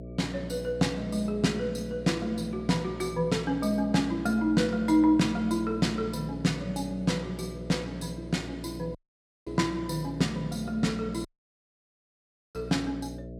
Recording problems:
hum; 60 Hz, harmonics up to 660 Hz, SNR 12 dB
audio cutting out; at 9 s for 0.5 s and at 11 s for 1.5 s

